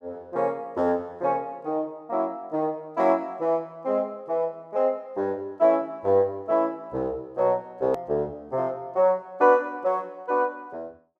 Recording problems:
edit click; at 8 s

